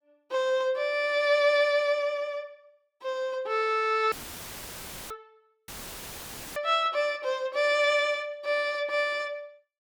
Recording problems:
audio cutting out; at 4 s for 1 s and at 5.5 s for 1 s; filled with static

